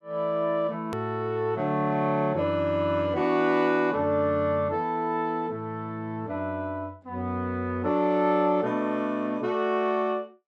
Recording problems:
edit click; at 1 s

